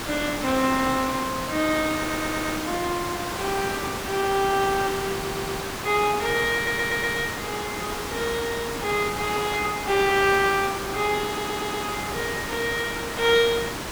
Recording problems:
hiss; slope -4 dB per octave, SNR 5 dB
stutter; 4 times, first at 2 s

